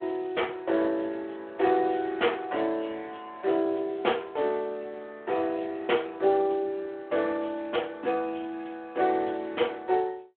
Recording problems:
phone line; 280 Hz to 3.4 kHz, Speex

